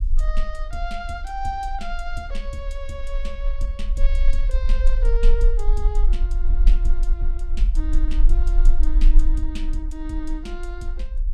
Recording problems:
low-frequency rumble; below 36 Hz, strongest tone 20 Hz, SNR -9 dB

